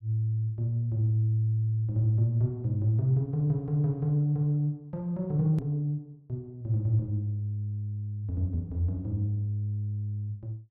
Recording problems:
edit click; at 5.5 s

